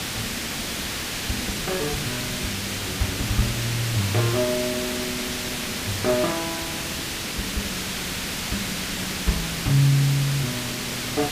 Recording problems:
background hiss; slope -1 dB per octave, SNR 0 dB

